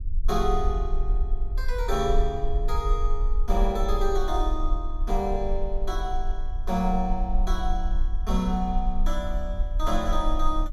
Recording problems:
rumble; below 42 Hz, strongest tone 20 Hz, SNR 0 dB

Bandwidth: 16 kHz